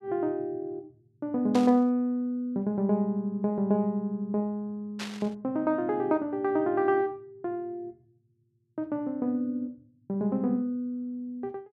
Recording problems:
static burst; at 1.5 s and at 5 s; peak -4 dB vs average level

